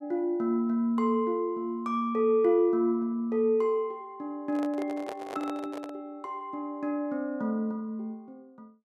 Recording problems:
handling noise; from 4.5 to 6 s; peak -6 dB vs average level

